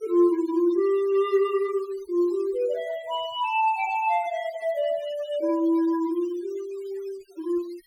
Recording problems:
denoising artefacts; signal-to-artefact ratio 21 dB

